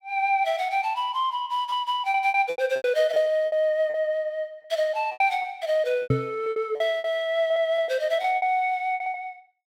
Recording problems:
packet loss; 12% of the sound replaced, filled with repeated pitch periods
microphone thump; at 6 s; peak +4 dB vs average level

